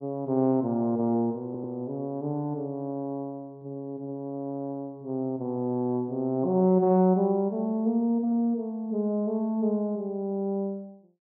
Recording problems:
audio stuttering; at 1.5 s

